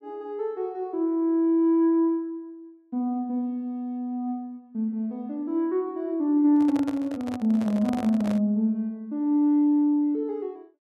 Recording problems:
microphone handling noise; from 6.5 to 8.5 s; peak -7 dB vs average level

